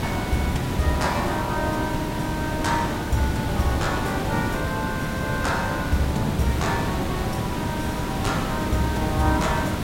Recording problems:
background hiss; slope -6 dB per octave, SNR 0 dB

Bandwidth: 16 kHz